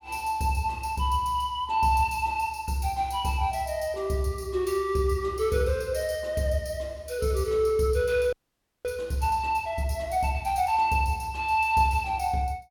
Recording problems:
audio freezing; at 8.5 s for 0.5 s

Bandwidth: 18 kHz